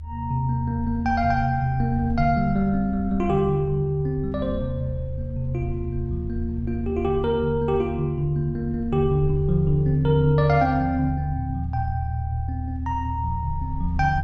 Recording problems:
low-frequency rumble; below 80 Hz, strongest tone 78 Hz, SNR 8 dB

